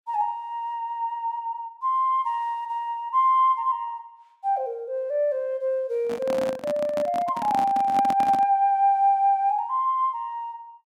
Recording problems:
microphone handling noise; from 6 to 8.5 s; peak -3 dB vs average level

